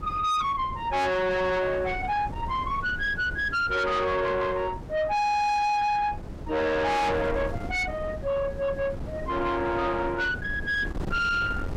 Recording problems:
distorted audio; soft clipping, signal-to-distortion ratio 6 dB
wind on the microphone; below 410 Hz, SNR 11 dB

